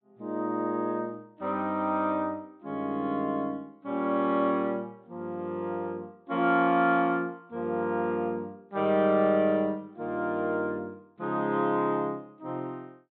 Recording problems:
treble missing; nothing above 4 kHz

